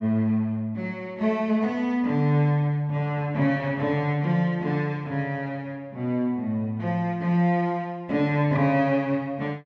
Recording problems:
none

